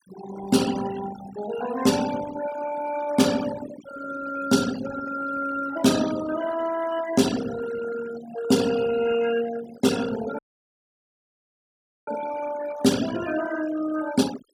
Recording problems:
noise reduction artefacts; signal-to-artefact ratio 12 dB
audio cutting out; at 10 s for 1.5 s

